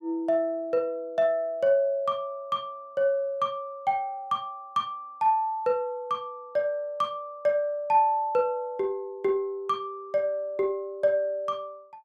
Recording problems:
none

